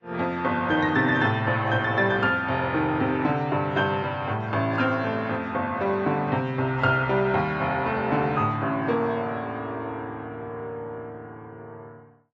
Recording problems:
lossy codec; AAC, log-spectral distance 2 dB, nothing above 7.3 kHz

